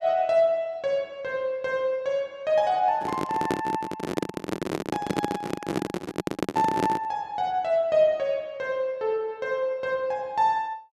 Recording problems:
microphone handling noise; from 3 to 7 s; peak +4 dB vs average level

